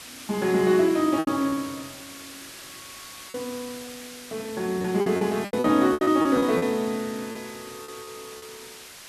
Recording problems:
background hiss; slope +1 dB per octave, SNR 16 dB
lost packets; 11% of the sound replaced, filled with repeated pitch periods

